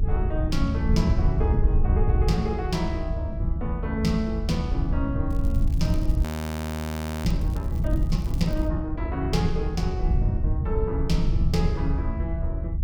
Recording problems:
rumble; below 90 Hz, SNR -3 dB
crackling; from 5.5 to 8.5 s; loose cable, SNR 21 dB
frozen audio; at 6 s for 1 s

